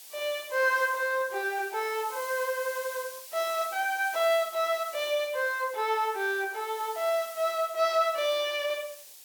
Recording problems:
hiss; SNR 15 dB

